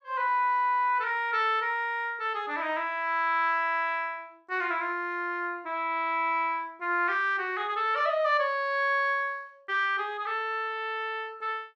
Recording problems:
none

